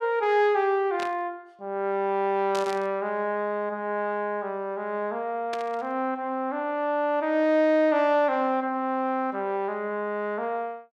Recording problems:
static burst; at 1 s, at 2.5 s and at 5.5 s; peak -6 dB vs average level

